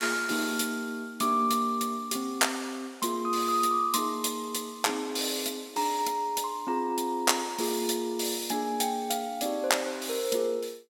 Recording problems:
none

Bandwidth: 17 kHz